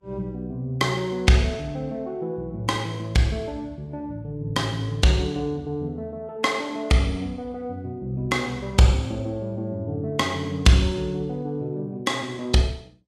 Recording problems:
lossy compression; Vorbis, log-spectral distance 2 dB, nothing above 13.8 kHz

